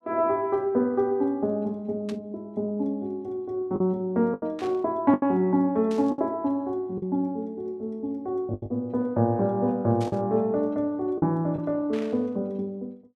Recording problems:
lost packets; 4% of the sound replaced, filled with the last packet
static burst; 5 times, first at 2 s; peak -12 dB vs average level

